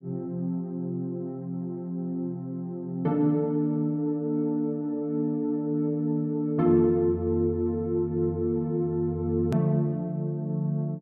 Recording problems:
hard cut with a click; at 9.5 s

